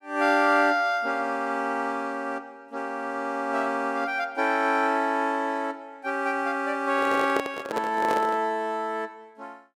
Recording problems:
microphone handling noise; from 7 to 8.5 s; peak +1 dB vs average level

